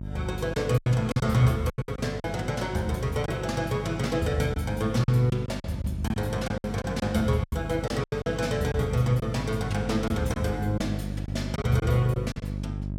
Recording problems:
electrical hum; 50 Hz, harmonics up to 400 Hz, SNR 8 dB
packet loss; 9% of the sound replaced, filled with silence

